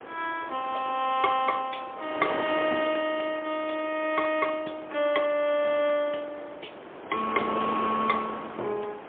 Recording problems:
telephone audio; 280 Hz to 3.4 kHz, AMR-NB, then MP3
wind noise; below 1.2 kHz, SNR 10 dB

